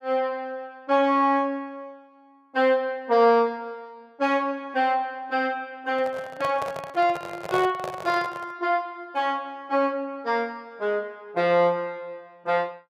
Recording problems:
microphone handling noise; from 6 to 8.5 s; peak -1 dB vs average level

